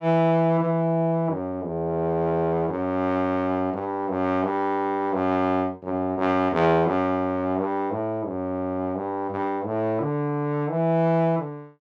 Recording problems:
none

